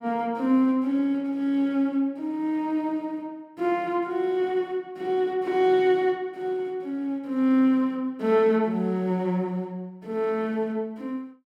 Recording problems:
none

